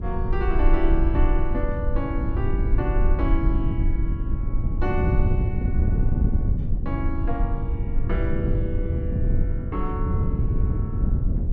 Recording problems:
rumble; below 42 Hz, strongest tone 24 Hz, SNR 0 dB
wind on the microphone; below 130 Hz, SNR -5 dB

